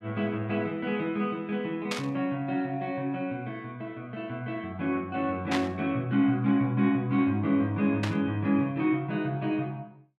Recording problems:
static burst; at 2 s, at 5.5 s and at 8 s; peak +1 dB vs average level

